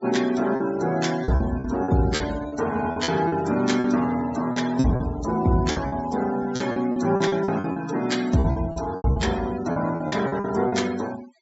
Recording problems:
treble missing; nothing above 8 kHz
noise reduction artefacts; signal-to-artefact ratio 16 dB
packet loss; 13% of the sound replaced, filled with repeated pitch periods

